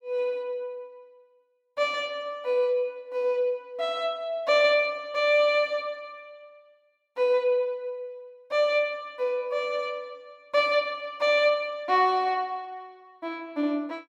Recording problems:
none

